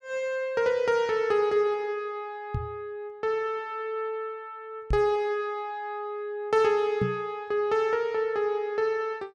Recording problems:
knock on the microphone; at 2.5 s, at 5 s and at 7 s; peak +3 dB vs average level

